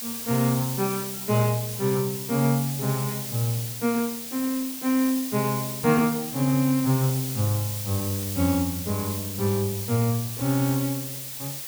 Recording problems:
background hiss; SNR 6 dB

